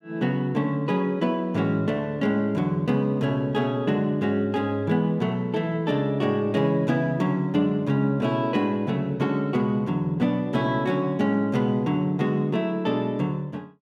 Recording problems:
none

